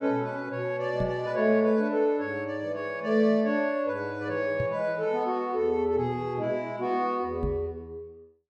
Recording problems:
knock on the microphone; at 1 s, at 4.5 s and at 7.5 s; peak -1 dB vs average level

